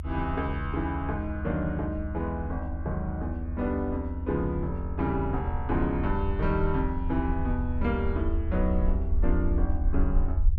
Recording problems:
rumble; below 78 Hz, SNR 1 dB

